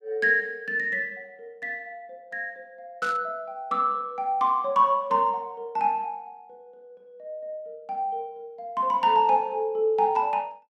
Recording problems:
static burst; at 3 s; peak -10 dB vs average level

